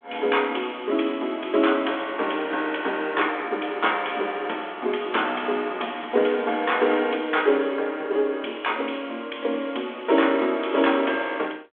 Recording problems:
phone line; 240 Hz to 3.5 kHz, G.726

